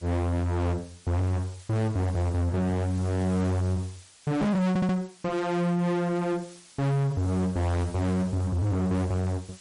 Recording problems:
lossy codec; MP3, log-spectral distance 5 dB, nothing above 12.3 kHz
distortion; soft clipping, signal-to-distortion ratio 7 dB
hiss; slope +2 dB per octave, SNR 23 dB
stutter; at 4.5 s

